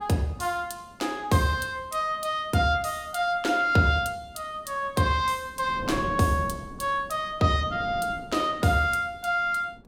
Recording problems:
wind noise; below 330 Hz, SNR 15 dB

